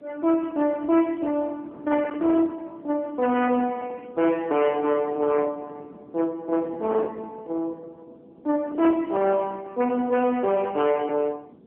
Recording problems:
telephone audio; 220 Hz to 3.2 kHz, AMR-NB
distortion; hard clipping, signal-to-distortion ratio 12 dB
wind on the microphone; below 760 Hz, SNR 19 dB

